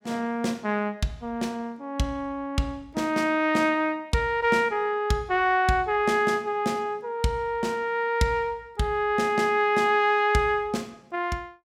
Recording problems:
none

